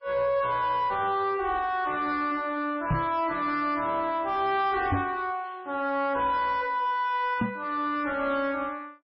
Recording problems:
codec artefacts; MP3, log-spectral distance 2 dB, nothing above 4.5 kHz
distortion; soft clipping, signal-to-distortion ratio 8 dB
knock on the microphone; at 3 s, at 5 s and at 7.5 s; peak +6 dB vs average level

